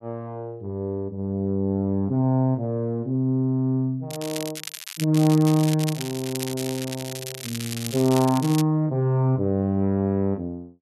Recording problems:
crackle; at 4 s and from 5 to 8.5 s; loose cable, SNR 10 dB

